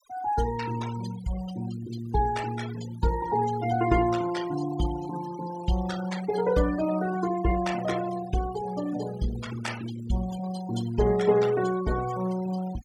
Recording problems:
denoising artefacts; signal-to-artefact ratio 14 dB

